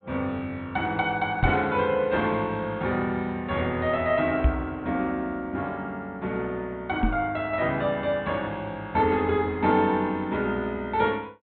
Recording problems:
treble missing; nothing above 4 kHz
knock on the microphone; at 1.5 s, at 4.5 s and at 7 s; peak +7 dB vs average level

